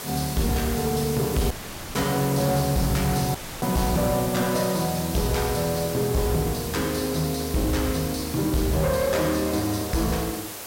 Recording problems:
distortion; hard clipping, uneven, signal-to-distortion ratio 10 dB
hiss; slope -3 dB per octave, SNR 8 dB
audio cutting out; at 1.5 s and at 3.5 s

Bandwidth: 16 kHz